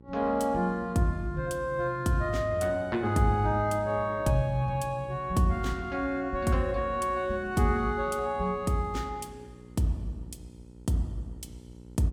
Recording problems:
electrical hum; 60 Hz, harmonics up to 960 Hz, SNR 21 dB

